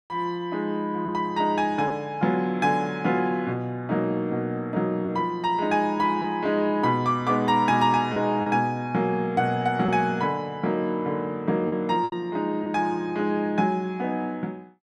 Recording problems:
packet loss; 2% of the sound replaced, filled with repeated pitch periods

